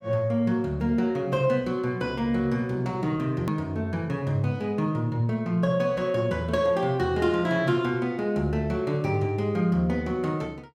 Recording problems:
click at an edit; at 3.5 s

